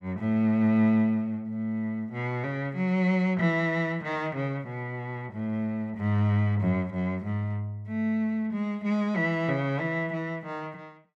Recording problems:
none

